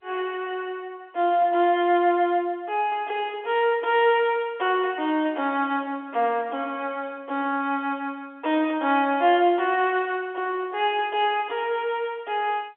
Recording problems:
phone line; 240 Hz to 3.5 kHz, G.711

